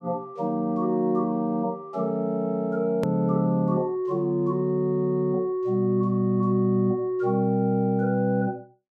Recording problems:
click at an edit; at 3 s

